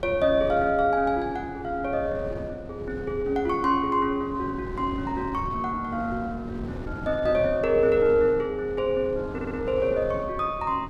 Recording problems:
wind on the microphone; below 320 Hz, SNR 13 dB
stutter; at 9.5 s

